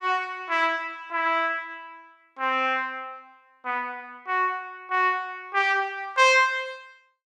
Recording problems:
none

